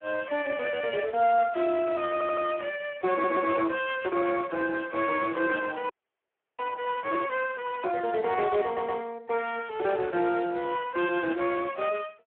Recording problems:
phone line; 300 Hz to 3.3 kHz, Speex
audio stuttering; at 2 s, at 3 s and at 8.5 s
frozen audio; at 6 s for 0.5 s

